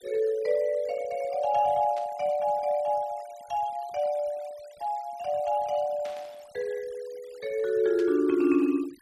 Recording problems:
denoising artefacts; signal-to-artefact ratio 24 dB
burst of static; at 2 s, at 6 s and at 8 s; peak -14 dB vs average level

